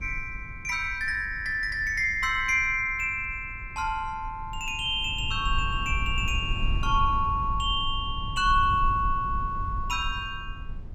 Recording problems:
rumble; below 80 Hz, SNR 9 dB

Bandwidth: 16 kHz